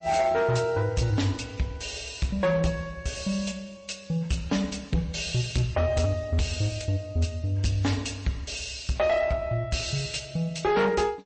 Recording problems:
lossy compression; MP3, log-spectral distance 4 dB, nothing above 8.2 kHz
distorted audio; hard clipping, signal-to-distortion ratio 12 dB

